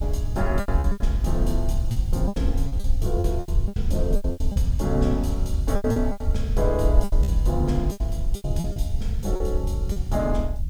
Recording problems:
background hiss; slope +2 dB per octave, SNR 27 dB
wind on the microphone; below 68 Hz, SNR -2 dB
lost packets; 14% of the sound replaced, filled with repeated pitch periods

